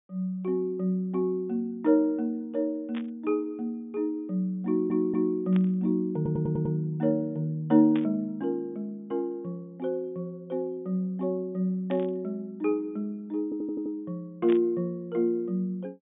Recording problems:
treble cut off; nothing above 3.6 kHz
burst of static; 5 times, first at 3 s; peak -9 dB vs average level
audio stuttering; at 4.5 s, at 6 s and at 13 s

